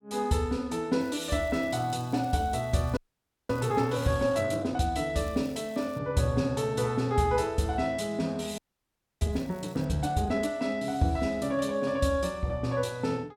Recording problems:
crackling; from 1 to 4 s, at 5 s and at 9.5 s; loose cable, SNR 27 dB
frozen audio; at 3 s for 0.5 s and at 8.5 s for 0.5 s

